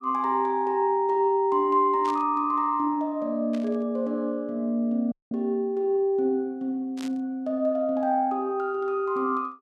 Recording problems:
burst of static; at 2 s, at 3.5 s and at 7 s; peak -12 dB vs average level
audio cutting out; at 5 s

